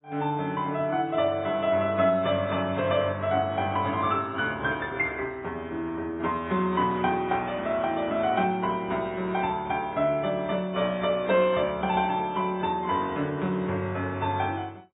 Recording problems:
codec artefacts; AAC, then AAC, log-spectral distance 2 dB, nothing above 3.2 kHz

